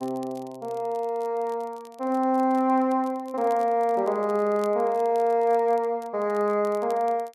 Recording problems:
crackle; vinyl, SNR 29 dB

